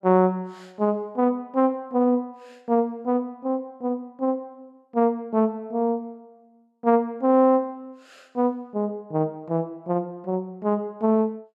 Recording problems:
none

